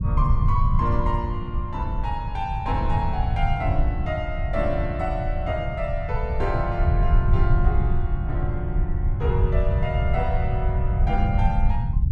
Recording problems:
low-frequency rumble; below 100 Hz, SNR -4 dB

